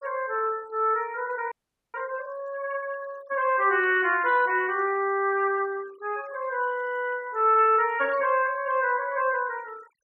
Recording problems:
denoising artefacts; signal-to-artefact ratio 24 dB
audio freezing; at 1.5 s

